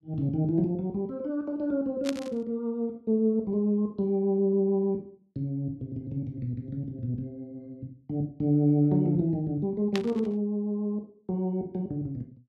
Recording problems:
burst of static; at 2 s and at 10 s; peak -1 dB vs average level

